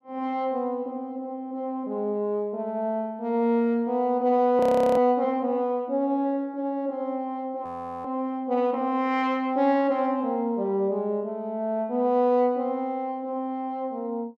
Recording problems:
frozen audio; at 4.5 s and at 7.5 s

